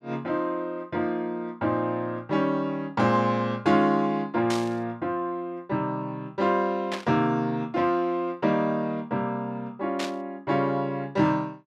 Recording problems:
static burst; at 4.5 s, at 7 s and at 10 s; peak -2 dB vs average level

